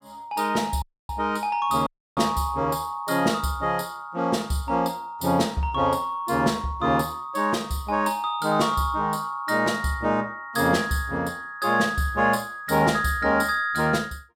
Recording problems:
dropout; at 1 s and at 2 s

